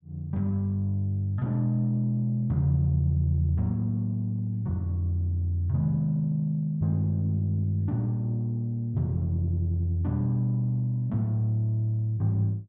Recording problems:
none

